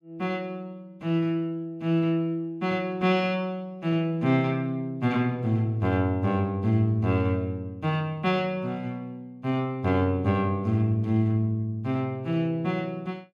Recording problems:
none

